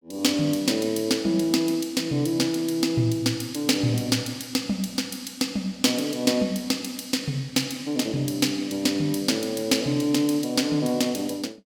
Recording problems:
none

